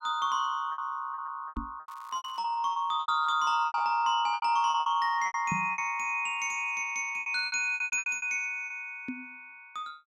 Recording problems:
packet loss; 15% of the sound replaced, filled with repeated pitch periods
microphone bump; at 1.5 s, at 5.5 s and at 9 s; peak -1 dB vs average level
crackle; at 2 s; loose cable, SNR 30 dB

